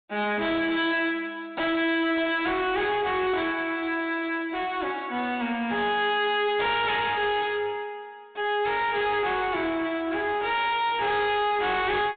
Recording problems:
low-pass filter; nothing above 4 kHz
distortion; hard clipping, uneven, signal-to-distortion ratio 6 dB

